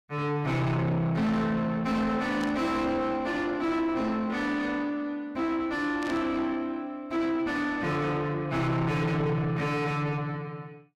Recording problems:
distortion; soft clipping, signal-to-distortion ratio 7 dB
static burst; at 2.5 s and at 6 s; peak -9 dB vs average level

